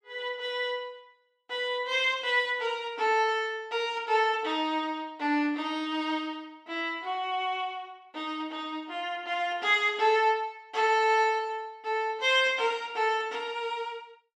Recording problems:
none

